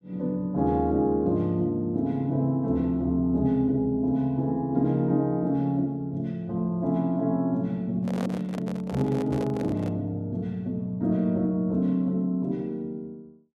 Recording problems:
microphone handling noise; from 8 to 10 s; peak -5 dB vs average level

